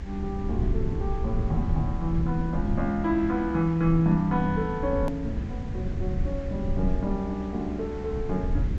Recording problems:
low-pass filter; nothing above 8 kHz
background hiss; SNR 20 dB
low-frequency rumble; below 110 Hz, SNR 4 dB
hard cut with a click; at 5 s

